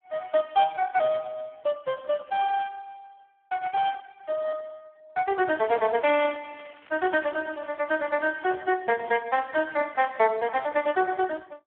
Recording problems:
telephone audio; 300 Hz to 2.8 kHz, Speex
crackling; from 5.5 to 8 s; loose cable, SNR 27 dB

